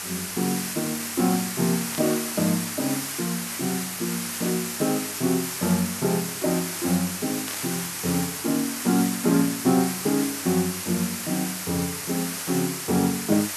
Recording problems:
hum; 50 Hz, harmonics up to 1.1 kHz, SNR 26 dB
hiss; SNR 3 dB
burst of static; at 2 s and at 7.5 s; peak -6 dB vs average level

